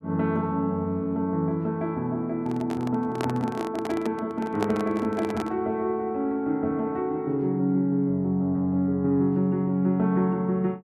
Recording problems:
microphone handling noise; from 2.5 to 5.5 s; peak 0 dB vs average level

